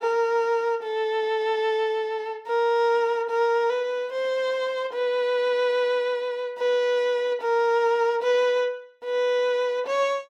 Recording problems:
none

